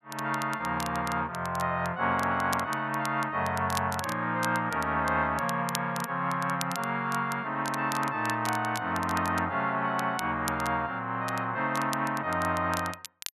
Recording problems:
crackling; vinyl, SNR 13 dB

